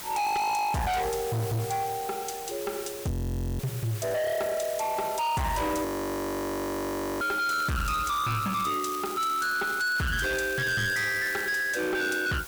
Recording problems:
distortion; hard clipping, signal-to-distortion ratio 6 dB
background hiss; slope -1 dB per octave, SNR 12 dB
frozen audio; at 3 s and at 6 s for 1.5 s
crackle; from 7.5 to 12 s; loose cable, SNR 15 dB

